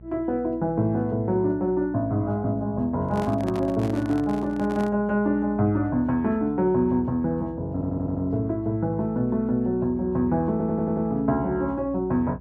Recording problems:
hum; 60 Hz, harmonics up to 600 Hz, SNR 19 dB
microphone handling noise; from 3 to 5 s; peak -7 dB vs average level
stutter; at 7.5 s and at 11 s

